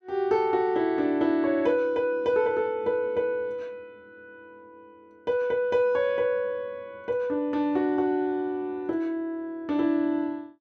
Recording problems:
none

